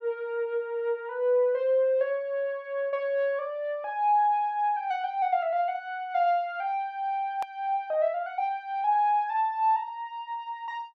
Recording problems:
click at an edit; at 7.5 s

